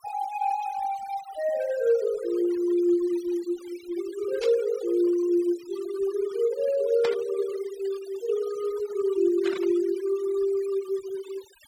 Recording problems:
denoising artefacts; signal-to-artefact ratio 19 dB
burst of static; at 4.5 s, at 7 s and at 9.5 s; peak -3 dB vs average level

